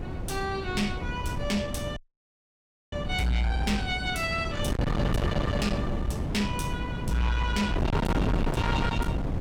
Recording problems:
distorted audio; soft clipping, signal-to-distortion ratio 7 dB
wind on the microphone; below 350 Hz, SNR 1 dB
dropout; at 2 s for 1 s

